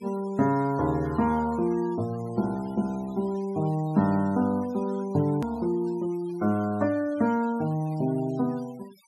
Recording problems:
denoising artefacts; signal-to-artefact ratio 24 dB
click at an edit; at 5.5 s

